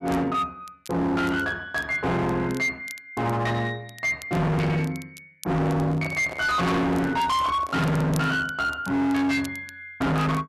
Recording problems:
distortion; hard clipping, signal-to-distortion ratio 6 dB
crackle; vinyl, SNR 23 dB
handling noise; from 5.5 to 8 s; peak -7 dB vs average level

